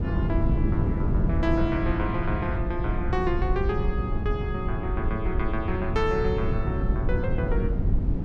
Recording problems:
low-frequency rumble; below 66 Hz, SNR 3 dB
wind on the microphone; below 190 Hz, SNR 0 dB

